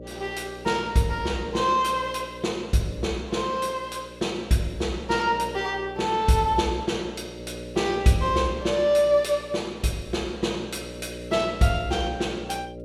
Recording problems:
hum; 60 Hz, harmonics up to 600 Hz, SNR 15 dB

